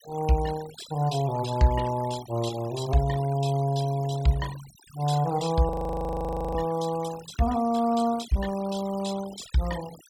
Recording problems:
denoising artefacts; signal-to-artefact ratio 17 dB
audio freezing; at 5.5 s for 1 s

